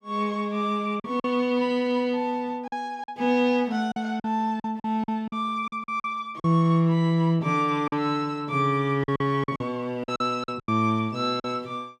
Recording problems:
packet loss; 8% of the sound replaced, filled with silence

